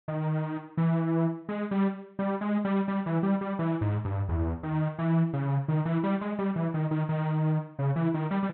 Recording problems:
treble missing; nothing above 4.1 kHz

